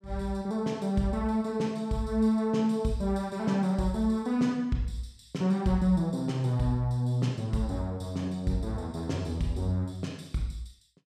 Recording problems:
none

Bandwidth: 14.5 kHz